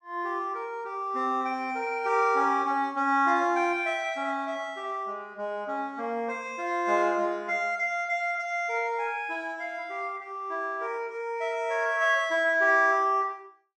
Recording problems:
none

